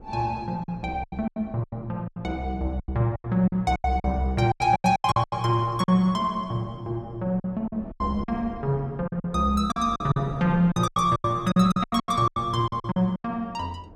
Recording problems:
wind on the microphone; below 380 Hz, SNR 19 dB
packet loss; 16% of the sound replaced, filled with silence

